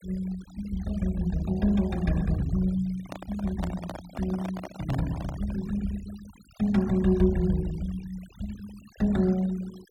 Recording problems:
denoising artefacts; signal-to-artefact ratio 20 dB
handling noise; from 3 to 5.5 s; peak -4 dB vs average level

